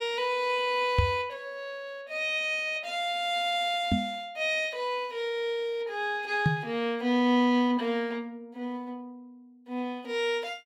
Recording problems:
knock on the microphone; at 1 s, at 4 s and at 6.5 s; peak +7 dB vs average level

